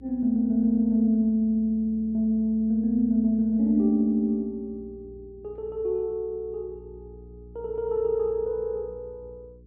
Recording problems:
hum; 60 Hz, harmonics up to 420 Hz, SNR 24 dB

